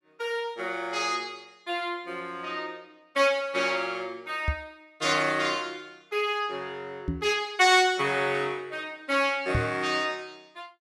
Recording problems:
microphone thump; at 4.5 s, at 7 s and at 9.5 s; peak +2 dB vs average level

